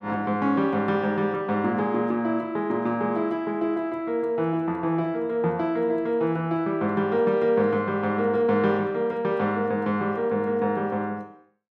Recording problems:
none

